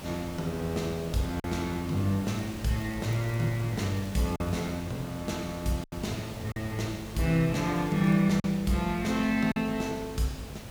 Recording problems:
hum; 50 Hz, harmonics up to 350 Hz, SNR 18 dB
hiss; slope -4 dB per octave, SNR 13 dB
packet loss; 3% of the sound replaced, filled with silence
crackling; from 2.5 to 5 s and at 8 s; loose cable, SNR 26 dB

